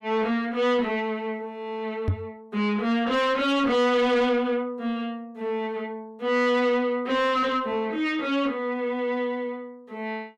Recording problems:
distortion; soft clipping, signal-to-distortion ratio 10 dB
knock on the microphone; at 2 s; peak +4 dB vs average level

